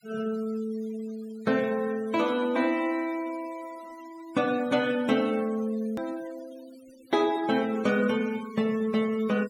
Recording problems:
denoising artefacts; signal-to-artefact ratio 20 dB
click at an edit; at 6 s

